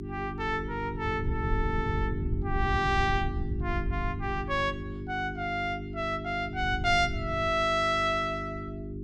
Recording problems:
hum; 50 Hz, harmonics up to 400 Hz, SNR 7 dB
wind noise; below 100 Hz, SNR 6 dB

